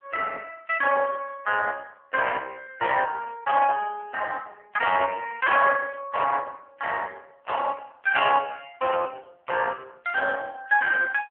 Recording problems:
telephone audio; 390 Hz to 2.8 kHz, AMR-NB

